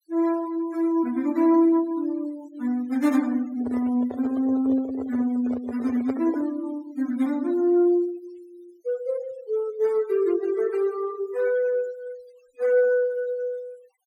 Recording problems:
denoising artefacts; signal-to-artefact ratio 20 dB
handling noise; from 3.5 to 6.5 s; peak -4 dB vs average level

